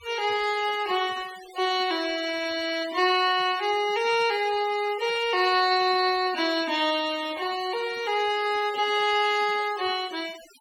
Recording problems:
denoising artefacts; signal-to-artefact ratio 17 dB

